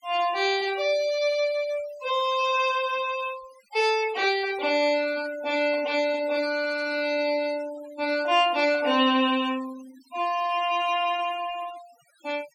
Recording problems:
noise reduction artefacts; signal-to-artefact ratio 19 dB

